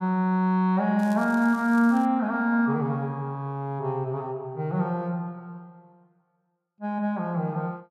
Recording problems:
crackle; from 1 to 2 s; loose cable, SNR 25 dB

